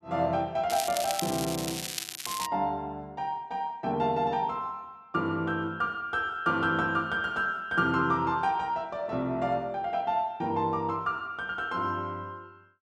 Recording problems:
crackle; from 0.5 to 2.5 s; loose cable, SNR 5 dB

